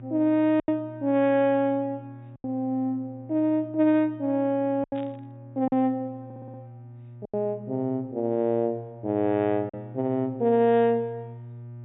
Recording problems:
treble missing; nothing above 4 kHz
hum; 60 Hz, harmonics up to 600 Hz, SNR 18 dB
lost packets; 4% of the sound replaced, filled with silence
static burst; at 5 s; peak -18 dB vs average level
stutter; at 6 s

